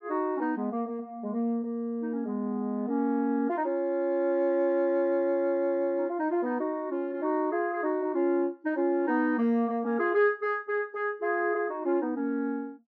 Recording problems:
low-pass filter; nothing above 6.7 kHz

